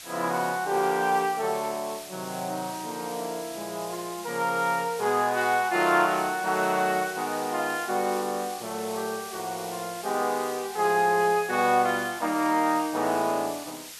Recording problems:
hiss; slope +3 dB per octave, SNR 13 dB

